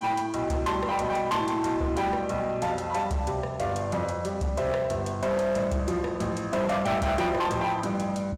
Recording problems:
distortion; hard clipping, signal-to-distortion ratio 10 dB

